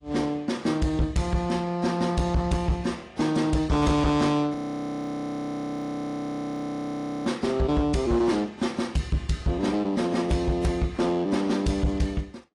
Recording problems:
lossy compression; AAC, log-spectral distance 3 dB
distortion; hard clipping, signal-to-distortion ratio 12 dB
frozen audio; at 4.5 s for 2.5 s

